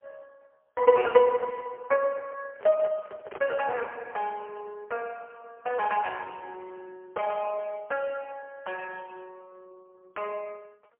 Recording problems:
phone line; 320 Hz to 2.7 kHz, AMR-NB, then MP3
microphone handling noise; from 2.5 to 4 s; peak -8 dB vs average level

